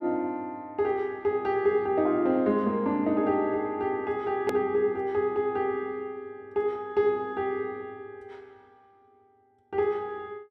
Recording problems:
edit click; at 4.5 s

